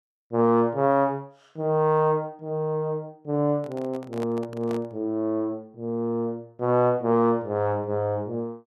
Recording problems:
handling noise; from 3.5 to 5 s; peak -8 dB vs average level

